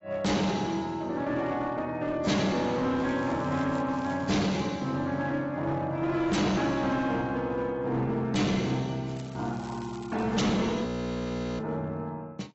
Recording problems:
lossy codec; AAC, log-spectral distance 3 dB, nothing above 7.6 kHz
distortion; hard clipping, uneven, signal-to-distortion ratio 7 dB
crackling; at 3 s, at 4 s and from 9 to 10 s; loose cable, SNR 24 dB
audio freezing; at 11 s for 0.5 s

